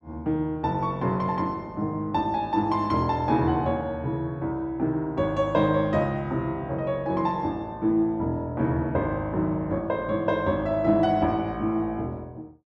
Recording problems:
none

